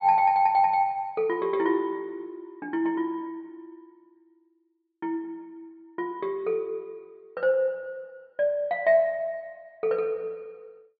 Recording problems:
low-pass filter; nothing above 4.8 kHz

